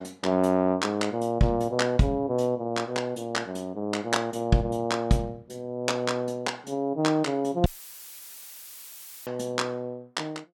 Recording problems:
audio cutting out; at 7.5 s for 1.5 s; filled with static

